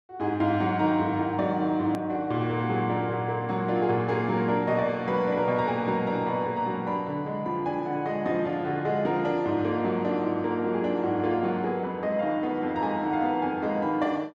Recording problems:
edit click; at 2 s

